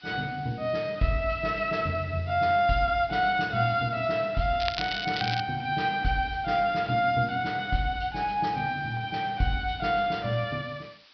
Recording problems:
treble cut off; nothing above 5.5 kHz
background hiss; SNR 26 dB
crackling; at 4.5 s; loose cable, SNR 7 dB

